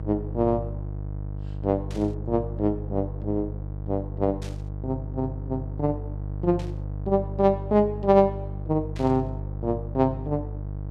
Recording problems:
hum; 50 Hz, harmonics up to 650 Hz, SNR 7 dB
static burst; 4 times, first at 2 s; peak -13 dB vs average level

